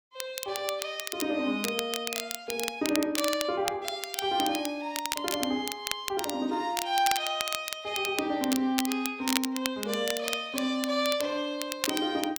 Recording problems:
crackling; vinyl, SNR 5 dB

